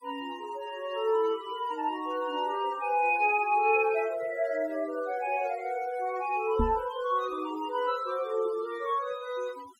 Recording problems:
noise reduction artefacts; signal-to-artefact ratio 22 dB
microphone thump; at 6.5 s; peak +3 dB vs average level

